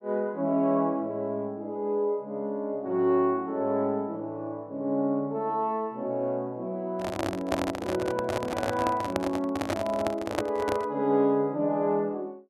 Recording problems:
microphone handling noise; from 7 to 11 s; peak +4 dB vs average level

